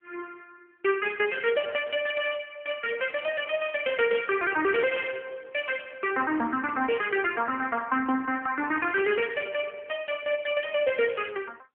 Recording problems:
phone line; 280 Hz to 3.3 kHz, AMR-NB

